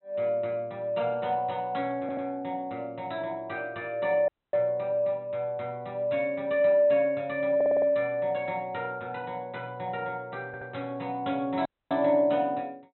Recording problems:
low-pass filter; nothing above 4 kHz
stutter; at 2 s, at 7.5 s and at 10 s
dropout; at 4.5 s and at 12 s

